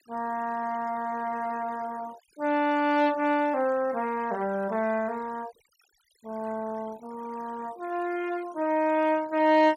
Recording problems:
noise reduction artefacts; signal-to-artefact ratio 21 dB

